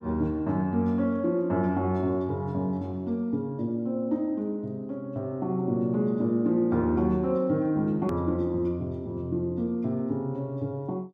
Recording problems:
hard cut with a click; at 8 s

